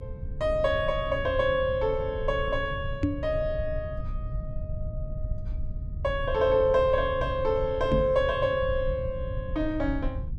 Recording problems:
low-frequency rumble; below 100 Hz, SNR 9 dB
knock on the microphone; at 3 s and at 8 s; peak +5 dB vs average level

